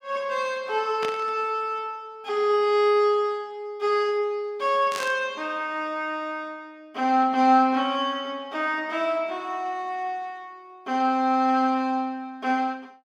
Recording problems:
burst of static; at 1 s and at 5 s; peak -3 dB vs average level

